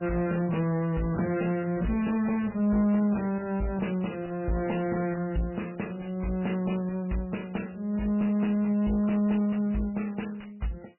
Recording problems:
lossy codec; MP3, log-spectral distance 5 dB, nothing above 2.9 kHz
distortion; soft clipping, signal-to-distortion ratio 10 dB

